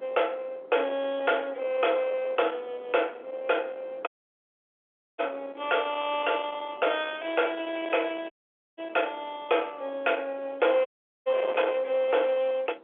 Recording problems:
telephone audio; 370 Hz to 3.5 kHz, G.711
distorted audio; soft clipping, signal-to-distortion ratio 11 dB
wind noise; below 1.2 kHz, SNR 16 dB
audio cutting out; at 4 s for 1 s, at 8.5 s and at 11 s

